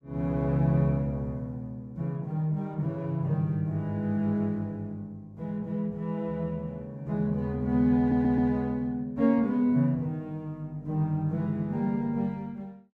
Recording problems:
stutter; at 8 s

